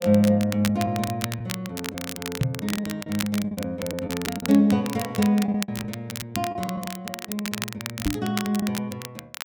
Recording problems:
crackle; vinyl, SNR 9 dB
lost packets; 7% of the sound replaced, filled with the last packet
knock on the microphone; at 2.5 s and at 8 s; peak +6 dB vs average level

